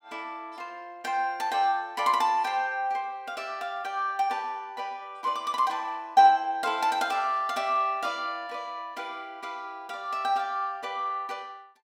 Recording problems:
none

